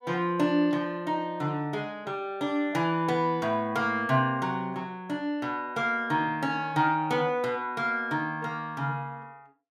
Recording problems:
none

